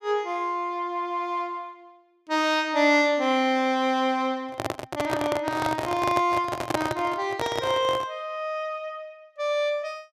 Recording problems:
handling noise; from 4.5 to 8 s; peak +4 dB vs average level

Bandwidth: 14.5 kHz